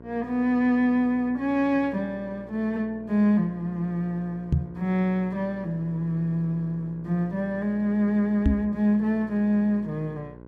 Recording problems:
electrical hum; 60 Hz, harmonics up to 1.6 kHz, SNR 20 dB
microphone thump; at 4.5 s and at 8.5 s; peak +7 dB vs average level

